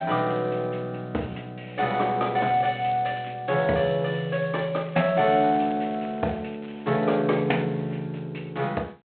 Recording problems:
telephone audio; 240 Hz to 3.7 kHz, G.726
crackle; at 2.5 s and from 5 to 6.5 s; loose cable, SNR 27 dB

